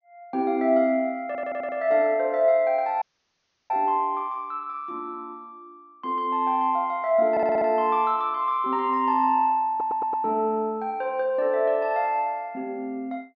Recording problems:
treble cut off; nothing above 6.5 kHz
stutter; at 1.5 s, at 7.5 s and at 9.5 s
audio cutting out; at 3 s for 0.5 s

